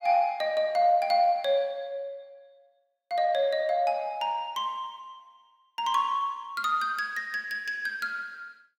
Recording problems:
none

